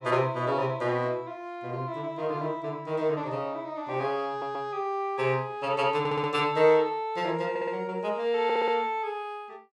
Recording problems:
stutter; 4 times, first at 4.5 s

